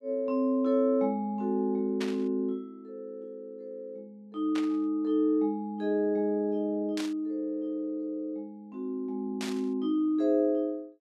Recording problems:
burst of static; 4 times, first at 2 s; peak -5 dB vs average level

